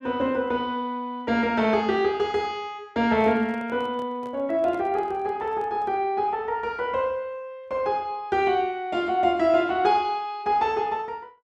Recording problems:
microphone handling noise; from 3 to 6 s; peak -12 dB vs average level

